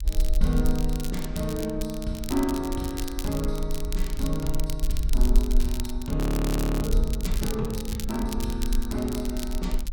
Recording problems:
low-frequency rumble; below 46 Hz, SNR 1 dB
crackle; vinyl, SNR 9 dB
frozen audio; at 6 s for 0.5 s

